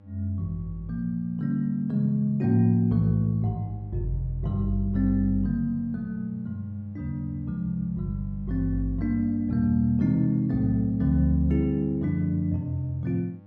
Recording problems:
hum; 50 Hz, harmonics up to 1.1 kHz, SNR 25 dB

